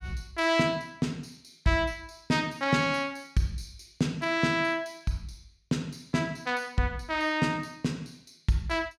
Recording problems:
none

